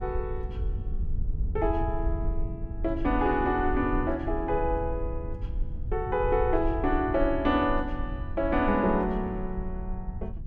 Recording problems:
rumble; below 70 Hz, SNR 7 dB

